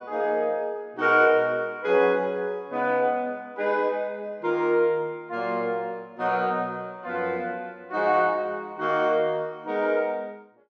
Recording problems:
none

